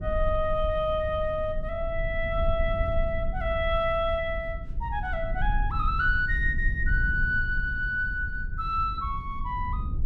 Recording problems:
rumble; below 68 Hz, SNR 5 dB

